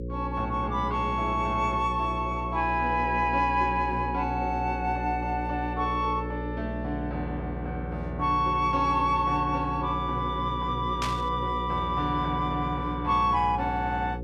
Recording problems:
electrical hum; 60 Hz, harmonics up to 540 Hz, SNR 7 dB
burst of static; at 11 s; peak -1 dB vs average level

